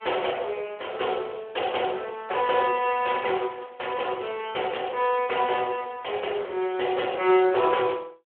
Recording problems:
phone line; 320 Hz to 3.3 kHz, Speex

